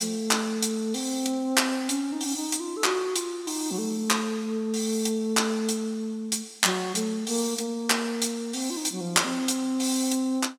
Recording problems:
none

